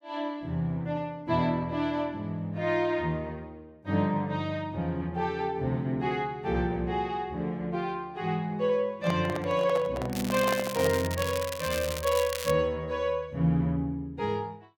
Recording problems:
microphone handling noise; from 9 to 11 s; peak 0 dB vs average level
crackle; from 10 to 13 s; loose cable, SNR 8 dB

